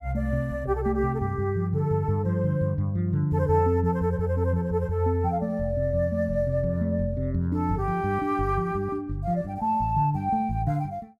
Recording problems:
none

